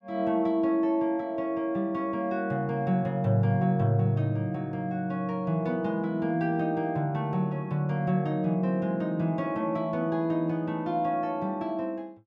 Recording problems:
none

